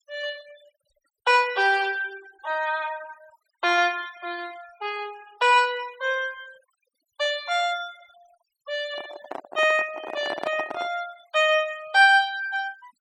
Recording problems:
denoising artefacts; signal-to-artefact ratio 23 dB
handling noise; from 9 to 11 s; peak -3 dB vs average level

